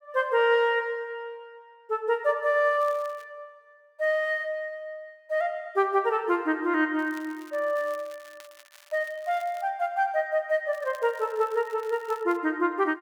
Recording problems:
crackle; at 3 s, from 7 to 9.5 s and from 11 to 12 s; loose cable, SNR 26 dB

